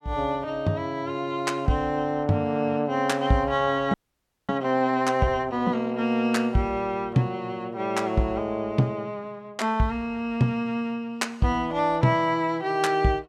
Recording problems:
audio freezing; at 4 s for 0.5 s

